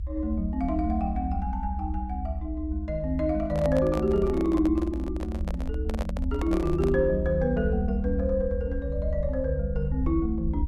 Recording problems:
rumble; below 74 Hz, strongest tone 58 Hz, SNR 4 dB
microphone handling noise; from 3.5 to 7 s; peak -3 dB vs average level

